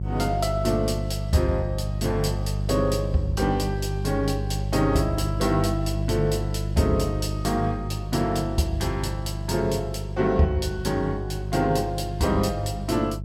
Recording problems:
hum; 50 Hz, harmonics up to 400 Hz, SNR 4 dB

